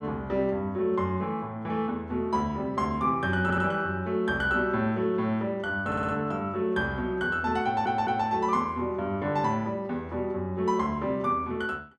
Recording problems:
stutter; at 3.5 s, at 6 s and at 7.5 s

